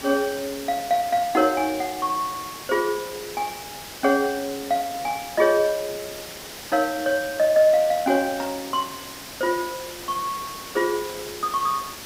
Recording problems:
hiss; slope -1 dB per octave, SNR 12 dB

